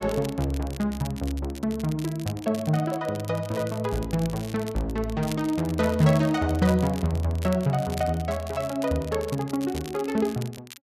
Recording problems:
crackling; vinyl, SNR 17 dB

